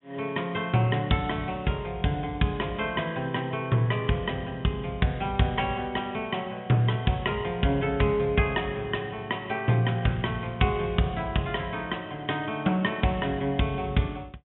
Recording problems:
low-pass filter; nothing above 3.7 kHz

